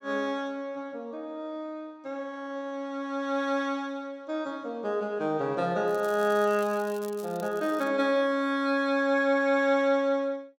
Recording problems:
crackling; from 6 to 8 s; loose cable, SNR 21 dB

